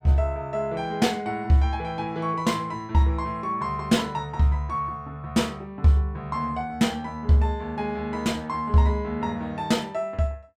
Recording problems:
none

